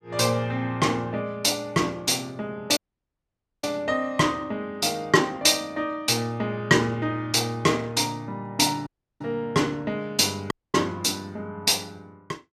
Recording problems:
dropout; at 3 s for 1 s, at 9 s and at 11 s

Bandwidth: 14.5 kHz